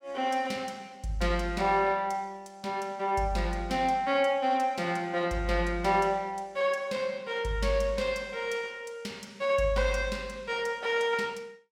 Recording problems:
none

